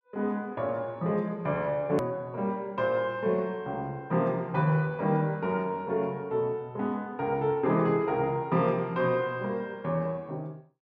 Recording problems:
click at an edit; at 2 s

